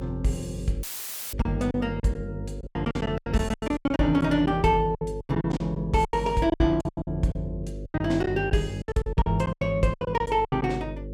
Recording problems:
hum; 50 Hz, harmonics up to 550 Hz, SNR 11 dB
lost packets; 18% of the sound replaced, filled with silence
dropout; at 1 s for 0.5 s; filled with static

